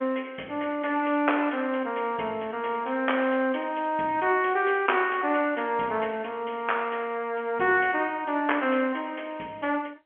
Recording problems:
phone line; 220 Hz to 3.2 kHz, G.711

